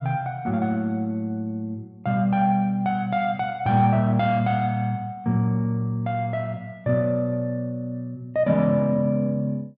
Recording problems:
none

